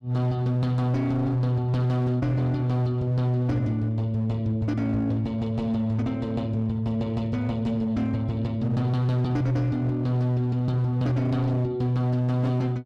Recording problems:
distortion; hard clipping, signal-to-distortion ratio 11 dB

